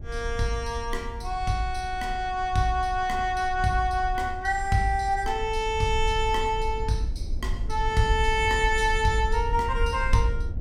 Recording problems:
rumble; below 62 Hz, SNR 8 dB

